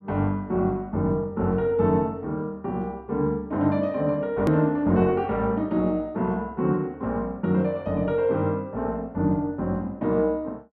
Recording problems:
click at an edit; at 4.5 s

